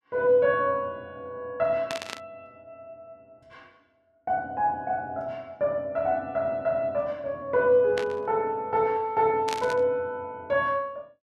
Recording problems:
burst of static; at 2 s, at 8 s and at 9.5 s; peak -2 dB vs average level

